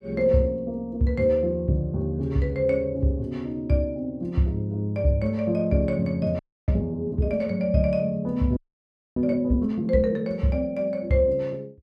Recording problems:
audio freezing; at 6.5 s and at 8.5 s for 0.5 s

